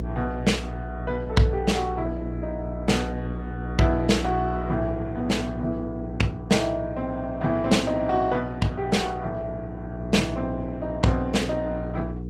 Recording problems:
lossy codec; Opus, log-spectral distance 2 dB, nothing above 18.3 kHz
hum; 60 Hz, harmonics up to 480 Hz, SNR 6 dB

